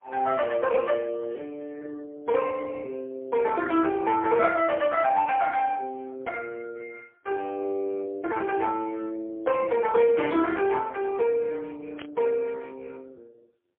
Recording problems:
telephone audio; 300 Hz to 2.3 kHz, AMR-NB, then MP3
static burst; at 5.5 s, at 10 s and at 12 s; peak -10 dB vs average level

